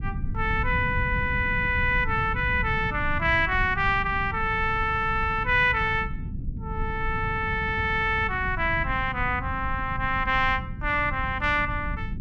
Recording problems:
rumble; below 130 Hz, SNR 9 dB

